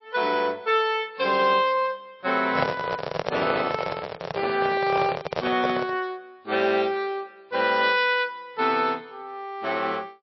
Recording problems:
lossy codec; MP3, log-spectral distance 3 dB, nothing above 4.9 kHz
handling noise; from 2.5 to 6 s; peak +3 dB vs average level

